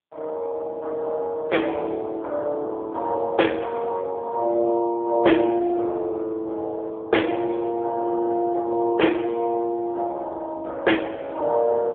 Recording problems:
phone line; 260 Hz to 3.4 kHz, AMR-NB

